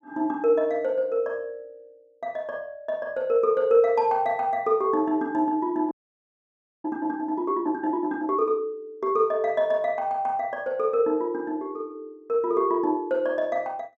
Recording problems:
audio freezing; at 6 s for 1 s

